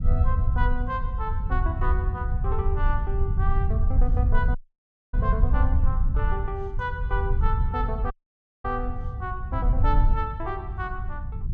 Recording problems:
low-frequency rumble; below 78 Hz, SNR -6 dB
audio cutting out; at 4.5 s for 0.5 s and at 8 s for 0.5 s

